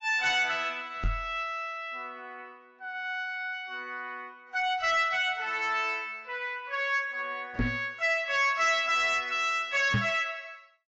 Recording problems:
lossy codec; AAC, log-spectral distance 2 dB, nothing above 7.3 kHz
distorted audio; soft clipping, signal-to-distortion ratio 12 dB
knock on the microphone; at 1 s, at 7.5 s and at 10 s; peak +4 dB vs average level

